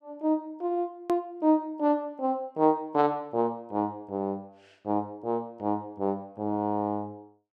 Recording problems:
click at an edit; at 1 s

